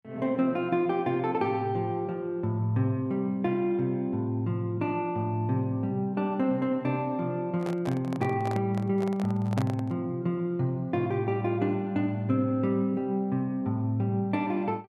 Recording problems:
handling noise; from 7.5 to 10 s; peak -2 dB vs average level

